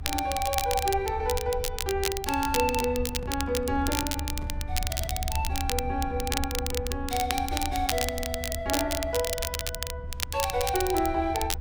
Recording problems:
low-frequency rumble; below 78 Hz, SNR 7 dB
crackling; vinyl, SNR 3 dB
handling noise; from 3 to 4.5 s; peak -6 dB vs average level

